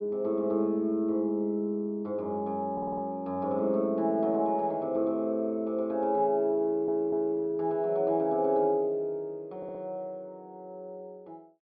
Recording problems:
low-pass filter; nothing above 5.5 kHz
audio stuttering; at 2.5 s, at 6.5 s and at 9.5 s

